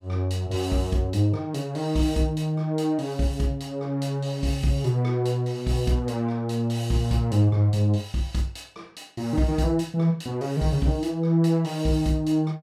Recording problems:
none

